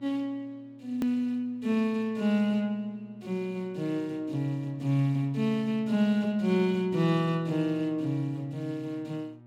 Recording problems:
hum; 60 Hz, harmonics up to 1.2 kHz, SNR 25 dB
edit click; at 1 s

